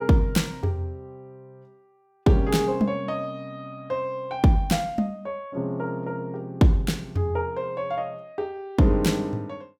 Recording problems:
none

